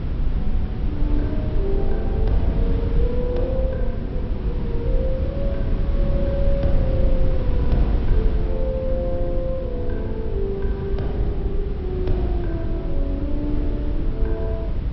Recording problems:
treble missing; nothing above 5.7 kHz
wind on the microphone; below 80 Hz, SNR -4 dB

